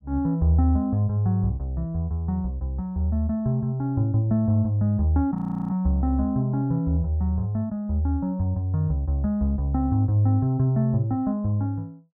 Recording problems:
frozen audio; at 5.5 s

